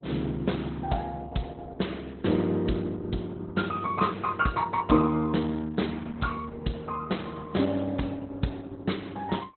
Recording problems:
lossy compression; Opus, log-spectral distance 5 dB, nothing above 4.1 kHz

